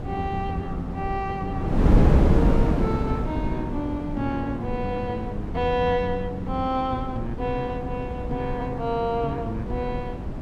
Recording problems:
wind noise; below 260 Hz, SNR -1 dB

